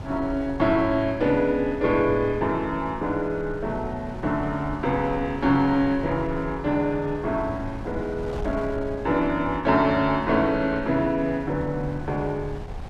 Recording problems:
wind on the microphone; below 180 Hz, SNR 14 dB

